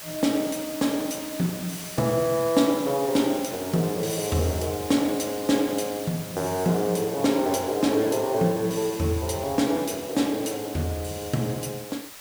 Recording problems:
hiss; SNR 12 dB

